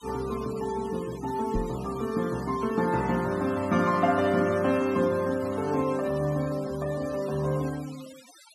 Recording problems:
noise reduction artefacts; signal-to-artefact ratio 18 dB
microphone thump; at 1.5 s; peak -2 dB vs average level

